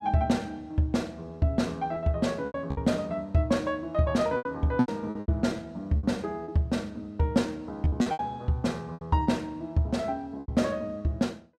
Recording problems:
packet loss; 8% of the sound replaced, filled with repeated pitch periods

